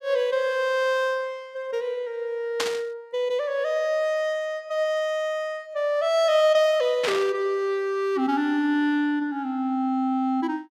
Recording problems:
static burst; at 2.5 s and at 7 s; peak +2 dB vs average level

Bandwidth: 15 kHz